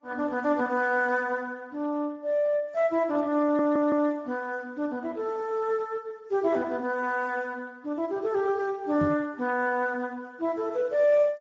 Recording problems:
codec artefacts; AAC, then Speex, log-spectral distance 2 dB
audio stuttering; at 3.5 s
microphone thump; at 9 s; peak +4 dB vs average level

